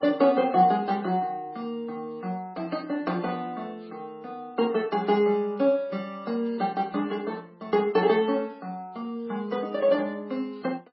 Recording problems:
lossy compression; MP3, log-spectral distance 2 dB, nothing above 4.8 kHz

